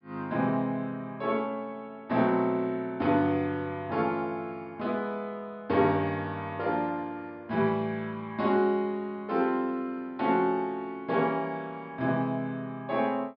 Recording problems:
treble cut off; nothing above 5.4 kHz

